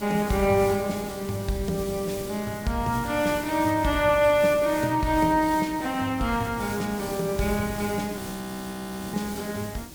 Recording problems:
hiss; SNR 13 dB
frozen audio; at 8 s for 1 s

